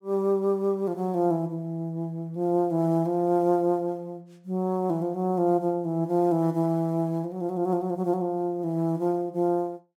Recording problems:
none

